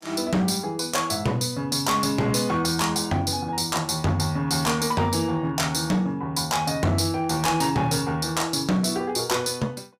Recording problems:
distortion; hard clipping, signal-to-distortion ratio 11 dB

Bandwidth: 15.5 kHz